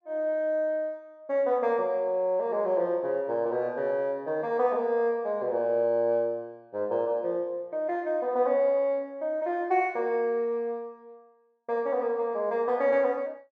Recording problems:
none

